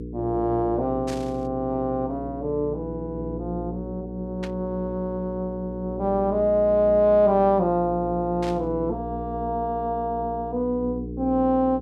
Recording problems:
hum; 60 Hz, harmonics up to 480 Hz, SNR 10 dB
static burst; at 1 s, at 4.5 s and at 8.5 s; peak -9 dB vs average level

